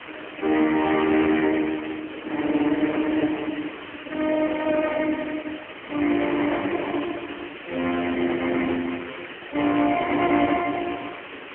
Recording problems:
phone line; 240 Hz to 3.1 kHz, AMR-NB
distorted audio; hard clipping, signal-to-distortion ratio 13 dB
hiss; SNR 14 dB
wind on the microphone; below 950 Hz, SNR 24 dB

